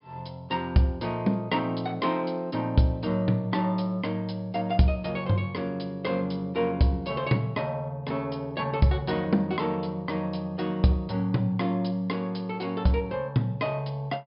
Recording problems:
treble missing; nothing above 5.5 kHz

